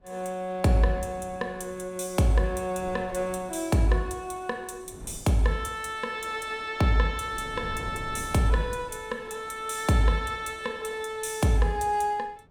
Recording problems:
wind on the microphone; below 290 Hz, SNR 16 dB

